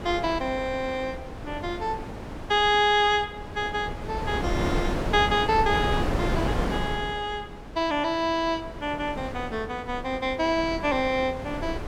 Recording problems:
wind noise; below 600 Hz, SNR 7 dB

